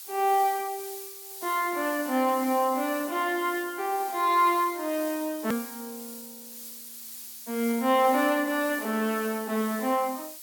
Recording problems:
hiss; slope +4 dB per octave, SNR 12 dB
hard cut with a click; at 5.5 s

